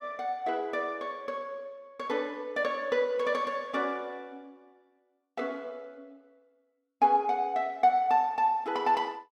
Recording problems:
none

